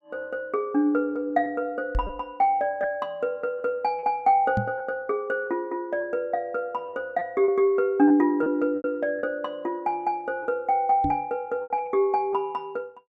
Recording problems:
packet loss; 4% of the sound replaced, filled with repeated pitch periods
knock on the microphone; at 2 s, at 4.5 s and at 11 s; peak +2 dB vs average level

